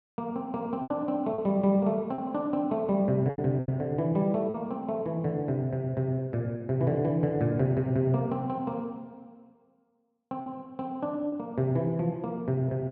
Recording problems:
lost packets; 4% of the sound replaced, filled with repeated pitch periods

